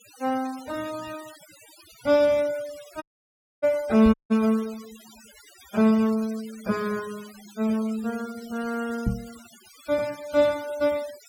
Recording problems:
denoising artefacts; signal-to-artefact ratio 20 dB
audio cutting out; at 3 s for 0.5 s and at 4 s
microphone bump; at 4 s and at 9 s; peak +3 dB vs average level

